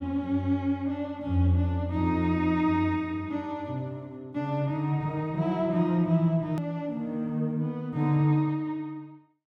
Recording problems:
edit click; at 6.5 s

